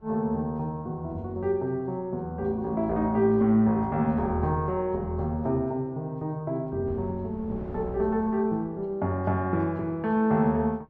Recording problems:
wind on the microphone; below 290 Hz, SNR 20 dB

